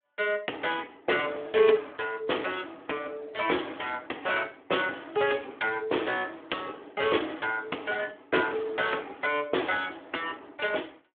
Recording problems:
telephone audio; 280 Hz to 3.5 kHz, Speex

